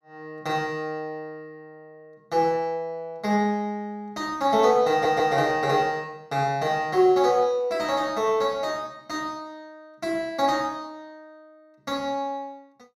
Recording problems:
stutter; at 5 s

